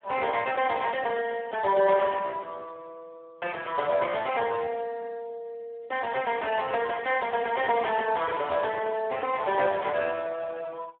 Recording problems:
phone line; 340 Hz to 2.9 kHz, Speex

